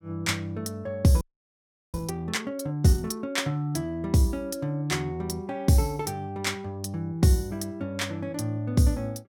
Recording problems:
frozen audio; at 1 s for 0.5 s

